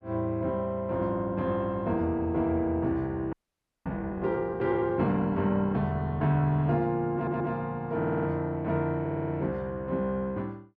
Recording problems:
frozen audio; at 3.5 s for 0.5 s
stutter; at 7 s, at 8 s and at 9 s

